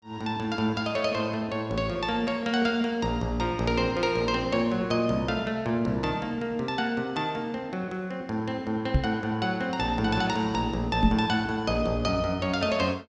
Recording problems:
microphone thump; at 9 s and at 11 s; peak +7 dB vs average level

